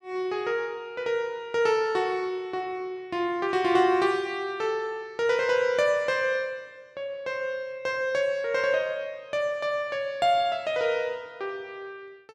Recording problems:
none

